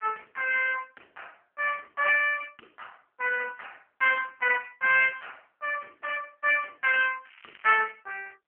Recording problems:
phone line; 240 Hz to 2.9 kHz, AMR-NB
crackling; at 7.5 s; loose cable, SNR 27 dB

